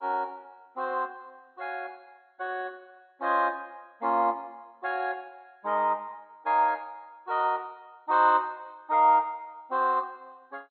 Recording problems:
lossy codec; MP2, log-spectral distance 2 dB, nothing above 3.7 kHz

